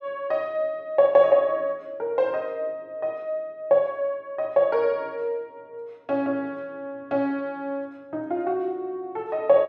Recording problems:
none

